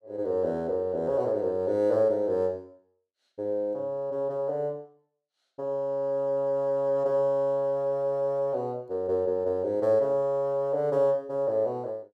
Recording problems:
none

